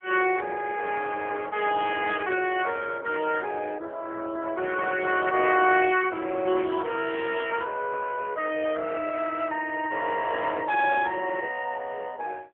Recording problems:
telephone audio; 300 Hz to 3.3 kHz, AMR-NB

